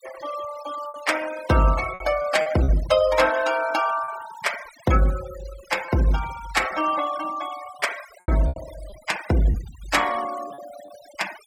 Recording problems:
denoising artefacts; signal-to-artefact ratio 14 dB
packet loss; 5% of the sound replaced, filled with repeated pitch periods

